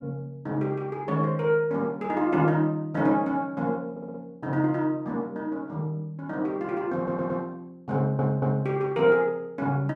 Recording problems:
stutter; at 4 s, at 7 s and at 8 s

